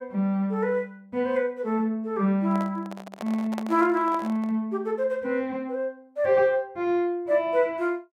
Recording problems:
handling noise; from 2.5 to 4.5 s; peak -5 dB vs average level

